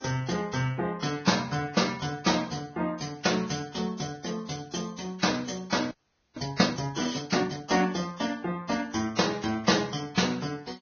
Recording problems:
lossy codec; Vorbis, log-spectral distance 6 dB, nothing above 6.5 kHz
audio freezing; at 6 s

